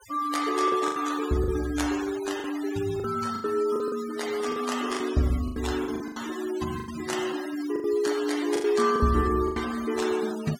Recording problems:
noise reduction artefacts; signal-to-artefact ratio 13 dB
packet loss; 10% of the sound replaced, filled with the last packet

